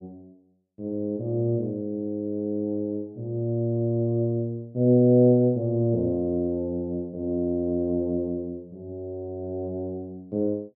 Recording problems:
none

